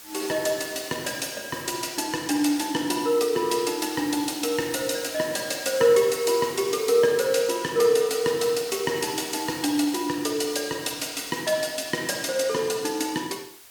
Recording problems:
background hiss; slope +1 dB per octave, SNR 17 dB

